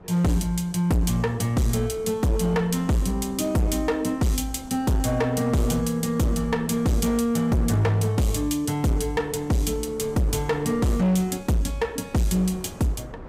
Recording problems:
distortion; hard clipping, uneven, signal-to-distortion ratio 7 dB
wind noise; below 560 Hz, SNR 21 dB

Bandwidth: 15.5 kHz